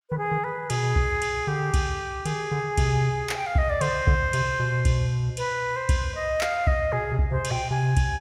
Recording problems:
none

